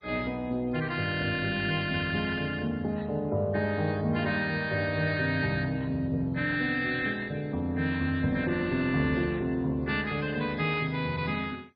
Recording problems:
lossy codec; MP3, then MP2, log-spectral distance 3 dB, nothing above 4.6 kHz

